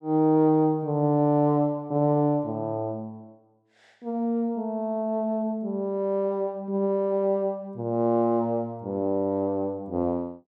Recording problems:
none

